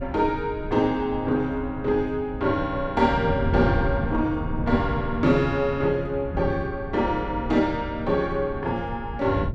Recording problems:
wind noise; below 160 Hz, SNR 8 dB

